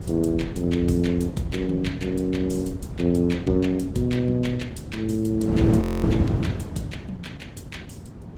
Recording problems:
lossy compression; Opus, log-spectral distance 3 dB
wind on the microphone; below 230 Hz, SNR 4 dB
frozen audio; at 6 s

